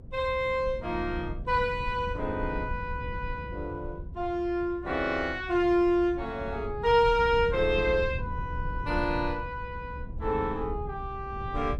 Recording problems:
rumble; below 110 Hz, SNR 10 dB

